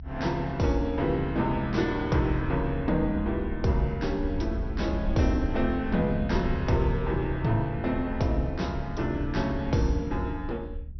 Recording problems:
treble cut off; nothing above 5.8 kHz
rumble; below 72 Hz, SNR 8 dB

